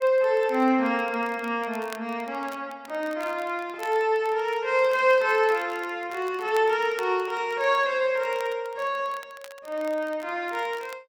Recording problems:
crackling; vinyl, SNR 24 dB

